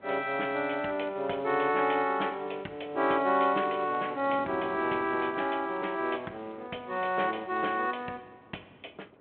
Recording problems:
phone line; 220 Hz to 3.4 kHz, G.726
wind noise; below 720 Hz, SNR 22 dB

